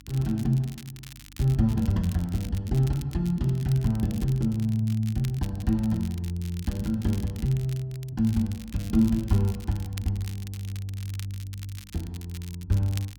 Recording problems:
mains hum; 50 Hz, harmonics up to 300 Hz, SNR 25 dB
crackle; vinyl, SNR 19 dB

